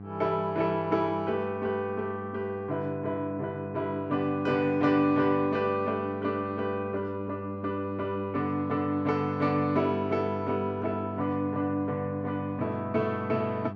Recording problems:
electrical hum; 50 Hz, harmonics up to 1.2 kHz, SNR 10 dB

